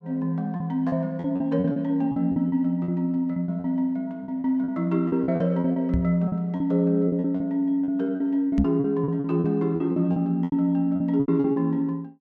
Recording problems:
lost packets; 15% of the sound replaced, filled with repeated pitch periods
knock on the microphone; at 6 s and at 8.5 s; peak +4 dB vs average level

